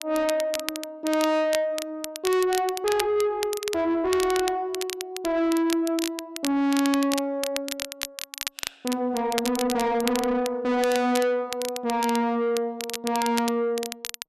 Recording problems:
distortion; soft clipping, signal-to-distortion ratio 7 dB
crackling; vinyl, SNR 9 dB

